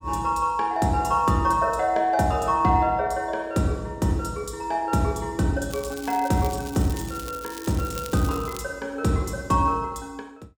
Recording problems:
crackling; from 5.5 to 8.5 s; loose cable, SNR 16 dB

